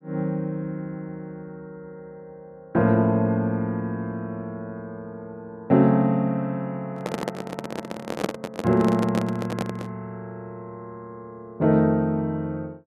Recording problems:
handling noise; from 7 to 10 s; peak +3 dB vs average level

